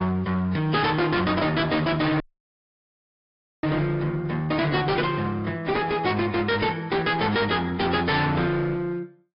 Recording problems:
treble cut off; nothing above 5.2 kHz
lossy codec; AAC, then MP3, log-spectral distance 3 dB
distorted audio; hard clipping, uneven, signal-to-distortion ratio 6 dB
dropout; at 2 s for 1.5 s

